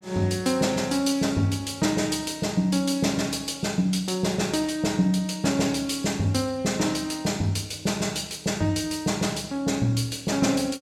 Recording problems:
none

